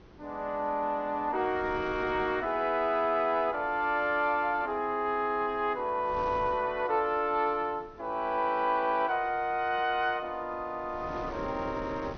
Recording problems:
treble cut off; nothing above 6.3 kHz
wind on the microphone; below 620 Hz, SNR 19 dB

